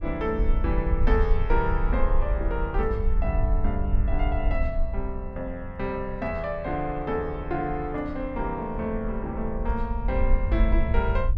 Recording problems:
wind noise; below 56 Hz, SNR -1 dB

